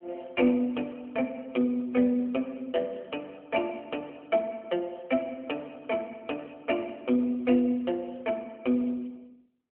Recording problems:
telephone audio; 190 Hz to 3.3 kHz, AMR-NB

